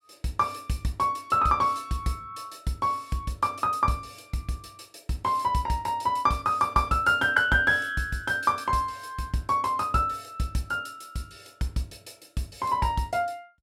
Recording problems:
none

